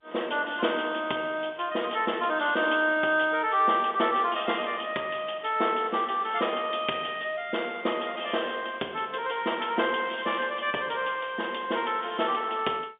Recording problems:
phone line; 260 Hz to 3.6 kHz, G.711

